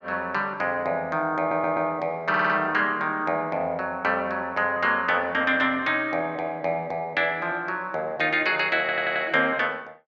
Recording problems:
audio stuttering; at 1.5 s, at 2.5 s and at 9 s

